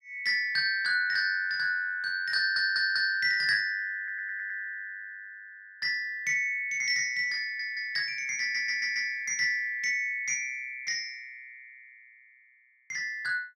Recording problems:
audio stuttering; 4 times, first at 2.5 s

